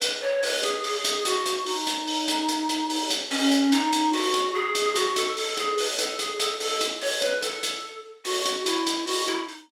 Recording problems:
none

